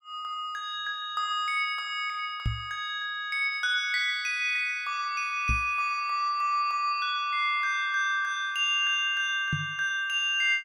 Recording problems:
knock on the microphone; at 2.5 s, at 5.5 s and at 9.5 s; peak +2 dB vs average level

